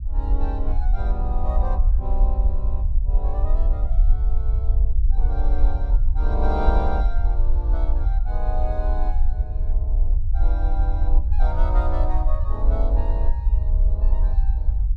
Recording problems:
rumble; below 52 Hz, SNR -11 dB

